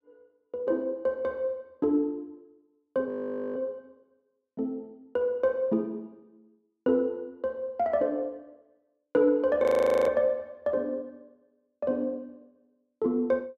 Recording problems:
frozen audio; at 3 s and at 9.5 s

